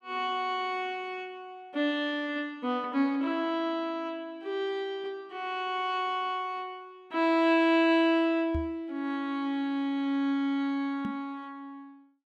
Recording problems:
microphone bump; at 8.5 s and at 11 s; peak -1 dB vs average level

